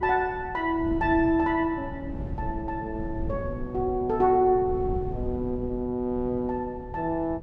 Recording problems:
wind noise; below 150 Hz, SNR 11 dB

